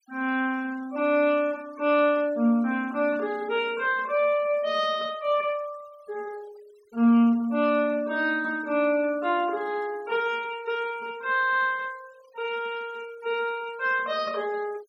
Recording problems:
noise reduction artefacts; signal-to-artefact ratio 25 dB

